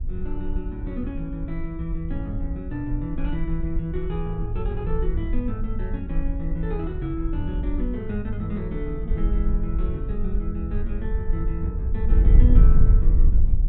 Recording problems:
wind on the microphone; below 56 Hz, SNR -5 dB

